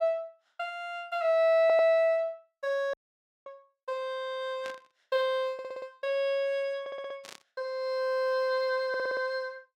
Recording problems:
stutter; 4 times, first at 1.5 s
audio cutting out; at 3 s for 0.5 s
static burst; at 4.5 s and at 7 s; peak -11 dB vs average level

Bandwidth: 16 kHz